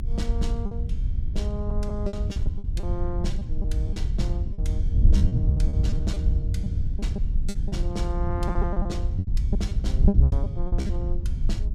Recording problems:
rumble; below 54 Hz, strongest tone 24 Hz, SNR -2 dB
wind noise; below 92 Hz, SNR -9 dB
packet loss; 12% of the sound replaced, filled with repeated pitch periods

